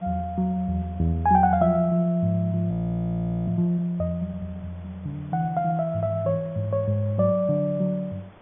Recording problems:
low-pass filter; nothing above 3.5 kHz
background hiss; SNR 27 dB
frozen audio; at 2.5 s for 1 s

